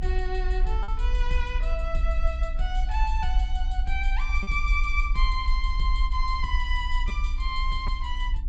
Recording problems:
low-pass filter; nothing above 8 kHz
electrical hum; 60 Hz, harmonics up to 300 Hz, SNR 16 dB
rumble; below 48 Hz, strongest tone 28 Hz, SNR -3 dB
packet loss; 1.3% of the sound replaced, filled with repeated pitch periods

